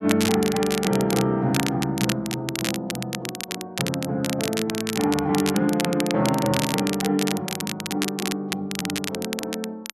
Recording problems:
crackling; vinyl, SNR 5 dB

